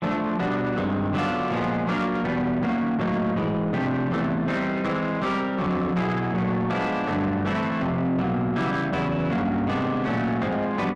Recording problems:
distortion; soft clipping, signal-to-distortion ratio 10 dB

